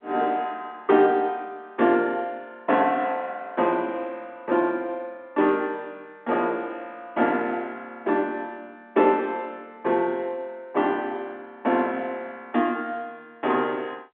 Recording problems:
telephone audio; 220 Hz to 3.5 kHz, G.711

